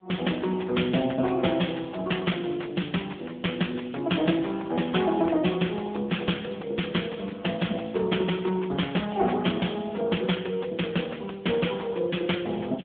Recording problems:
phone line; 150 Hz to 3.5 kHz, AMR-NB
distorted audio; soft clipping, signal-to-distortion ratio 13 dB

